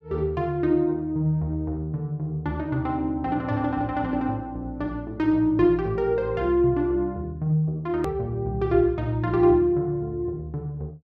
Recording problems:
click at an edit; at 8 s

